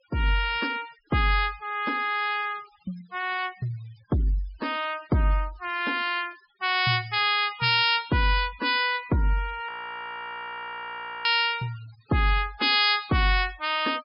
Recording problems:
treble cut off; nothing above 5.5 kHz
denoising artefacts; signal-to-artefact ratio 22 dB
audio freezing; at 9.5 s for 1.5 s

